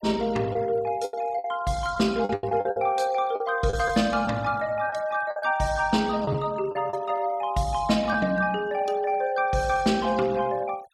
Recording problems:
noise reduction artefacts; signal-to-artefact ratio 22 dB
packet loss; 6% of the sound replaced, filled with the last packet

